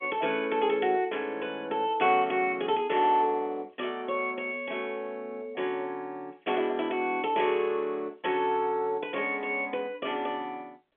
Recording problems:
telephone audio; 260 Hz to 3.4 kHz, G.711

